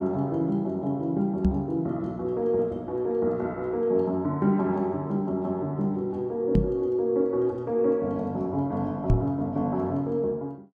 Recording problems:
knock on the microphone; at 1.5 s, at 6.5 s and at 9 s; peak +8 dB vs average level

